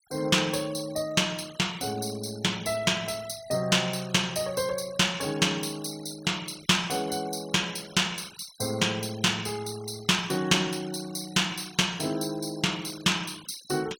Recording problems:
denoising artefacts; signal-to-artefact ratio 19 dB

